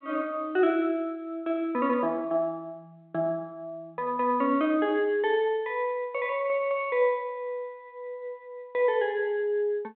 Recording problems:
phone line; 190 Hz to 3.4 kHz, G.726

